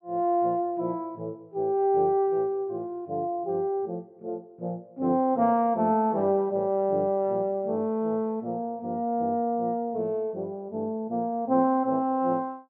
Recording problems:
none

